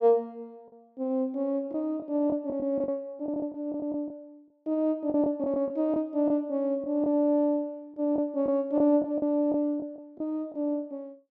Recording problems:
packet loss; 7% of the sound replaced, filled with the last packet

